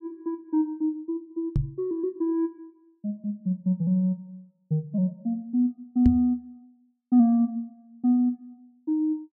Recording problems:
microphone bump; at 1.5 s and at 6 s; peak +7 dB vs average level

